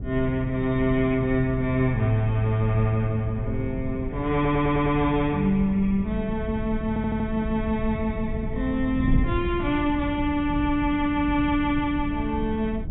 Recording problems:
low-pass filter; nothing above 4 kHz
wind on the microphone; below 150 Hz, SNR 8 dB
stutter; at 4.5 s and at 7 s

